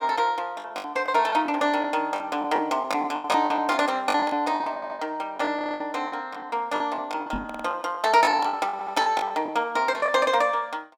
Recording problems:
lost packets; 14% of the sound replaced, filled with the last packet
stutter; 4 times, first at 5 s
microphone bump; at 7.5 s; peak -3 dB vs average level

